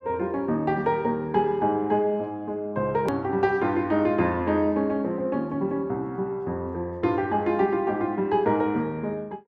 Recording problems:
click at an edit; at 3 s

